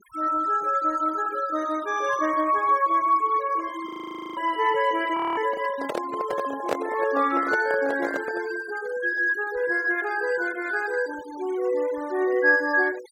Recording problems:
noise reduction artefacts; signal-to-artefact ratio 19 dB
frozen audio; at 4 s and at 5 s
microphone handling noise; from 5 to 8.5 s; peak +3 dB vs average level

